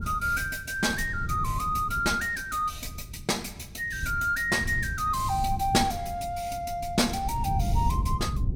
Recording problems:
wind on the microphone; below 120 Hz, SNR 7 dB

